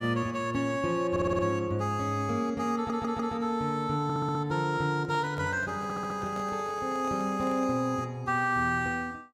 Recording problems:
audio stuttering; 4 times, first at 1 s
microphone handling noise; from 5 to 8 s; peak -10 dB vs average level

